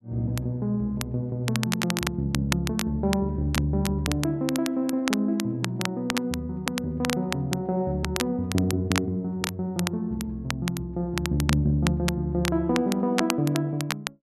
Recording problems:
crackling; vinyl, SNR 7 dB

